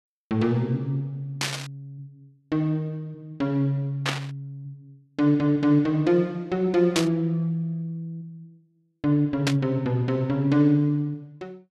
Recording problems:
burst of static; 4 times, first at 1.5 s; peak +3 dB vs average level

